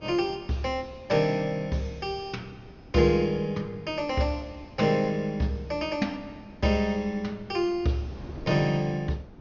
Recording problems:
treble cut off; nothing above 6.5 kHz
wind on the microphone; below 370 Hz, SNR 20 dB

